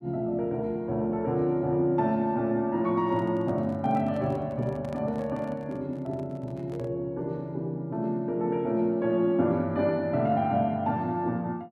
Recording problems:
handling noise; from 3 to 7 s; peak -12 dB vs average level

